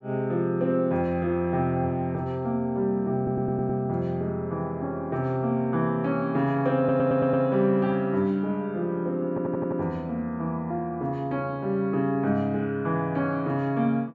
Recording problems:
audio stuttering; at 3 s, at 7 s and at 9.5 s

